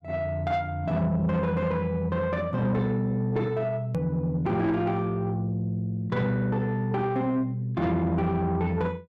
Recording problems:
distortion; soft clipping, signal-to-distortion ratio 12 dB
hard cut with a click; at 4 s

